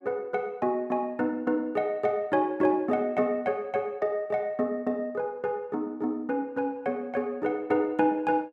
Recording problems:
none

